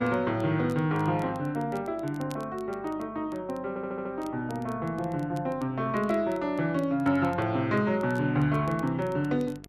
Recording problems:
hum; 50 Hz, harmonics up to 900 Hz, SNR 23 dB
crackling; vinyl, SNR 28 dB
stutter; at 3.5 s

